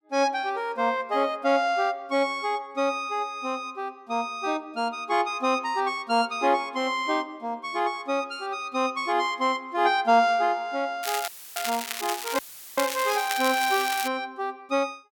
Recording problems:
crackling; from 11 to 14 s; loose cable, SNR 7 dB
dropout; at 11 s and at 12 s; filled with static

